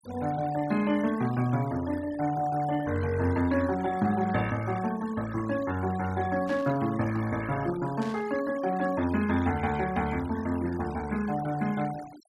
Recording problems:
noise reduction artefacts; signal-to-artefact ratio 17 dB
static burst; at 6.5 s and at 8 s; peak -13 dB vs average level

